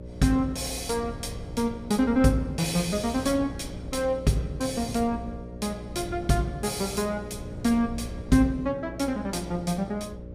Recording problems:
hum; 60 Hz, harmonics up to 600 Hz, SNR 13 dB
wind noise; below 150 Hz, SNR 16 dB

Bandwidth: 15.5 kHz